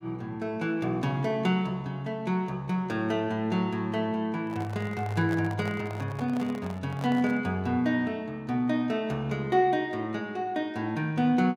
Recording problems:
handling noise; from 4.5 to 7.5 s; peak -7 dB vs average level

